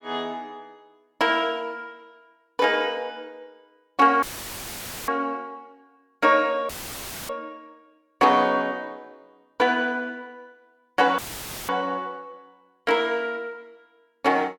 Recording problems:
dropout; at 4 s for 1 s, at 6.5 s for 0.5 s and at 11 s for 0.5 s; filled with static

